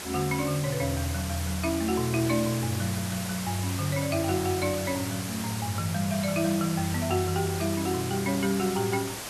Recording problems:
background hiss; slope -2 dB per octave, SNR 7 dB

